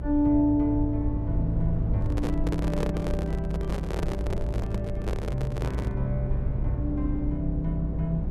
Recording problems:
electrical hum; 50 Hz, harmonics up to 450 Hz, SNR 26 dB
low-frequency rumble; below 96 Hz, SNR 2 dB
microphone handling noise; from 2 to 6 s; peak +2 dB vs average level

